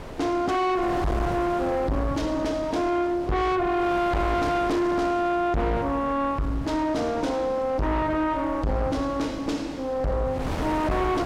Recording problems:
distortion; soft clipping, signal-to-distortion ratio 5 dB
wind noise; below 950 Hz, SNR 11 dB

